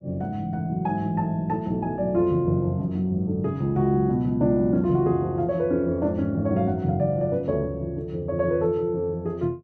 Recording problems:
none

